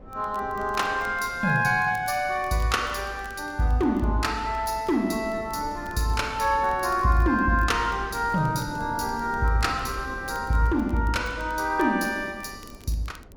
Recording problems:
wind on the microphone; below 380 Hz, SNR 18 dB
crackle; vinyl, SNR 30 dB

